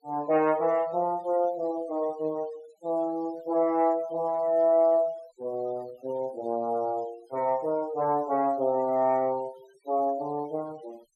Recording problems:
noise reduction artefacts; signal-to-artefact ratio 26 dB

